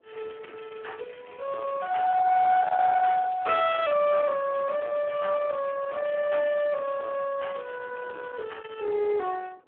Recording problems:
phone line; 300 Hz to 3.2 kHz, Speex
distortion; soft clipping, signal-to-distortion ratio 11 dB
wind noise; below 800 Hz, SNR 15 dB

